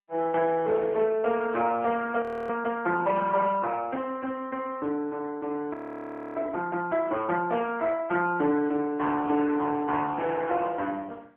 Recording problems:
telephone audio; 260 Hz to 3.2 kHz, AMR-NB
audio freezing; at 2 s and at 5.5 s for 0.5 s

